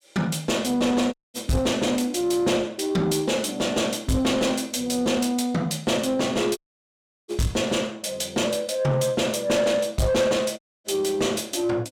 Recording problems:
distortion; soft clipping, signal-to-distortion ratio 11 dB
dropout; at 1 s, at 6.5 s for 0.5 s and at 11 s

